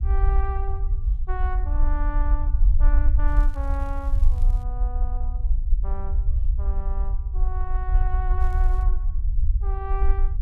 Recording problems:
rumble; below 52 Hz, SNR -12 dB
crackling; from 3.5 to 4.5 s and at 8.5 s; loose cable, SNR 21 dB

